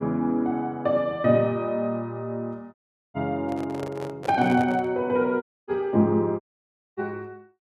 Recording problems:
dropout; at 2.5 s, at 5.5 s and at 6.5 s for 0.5 s
microphone handling noise; from 3.5 to 5 s; peak -5 dB vs average level

